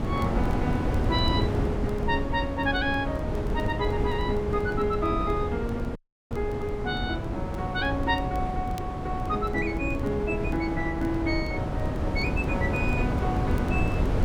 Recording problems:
wind on the microphone; below 330 Hz, SNR 0 dB
crackle; vinyl, SNR 29 dB
audio cutting out; at 6 s

